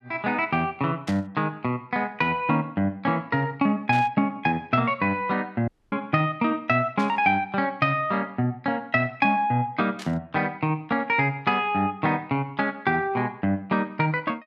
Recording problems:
burst of static; 4 times, first at 1 s; peak -8 dB vs average level
dropout; at 5.5 s

